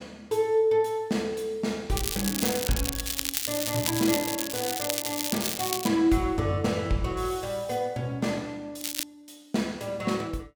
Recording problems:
crackle; from 2 to 6 s and at 9 s; loose cable, SNR 1 dB

